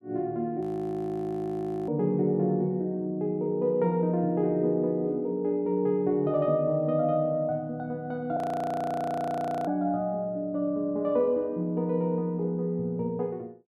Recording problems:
audio freezing; at 0.5 s for 1.5 s and at 8.5 s for 1.5 s

